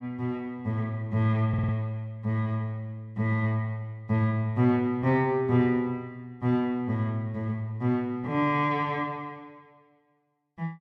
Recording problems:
audio stuttering; at 1.5 s

